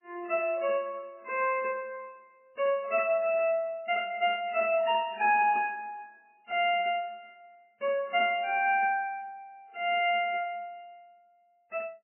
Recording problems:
codec artefacts; MP3, log-spectral distance 3 dB, nothing above 2.4 kHz

